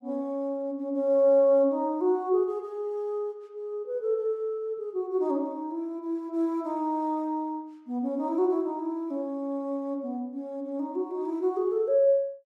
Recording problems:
none

